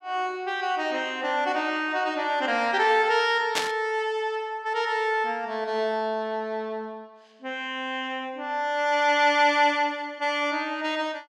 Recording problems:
static burst; at 3.5 s; peak +4 dB vs average level

